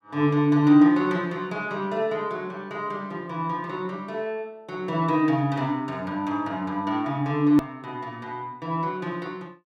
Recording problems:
edit click; at 7.5 s

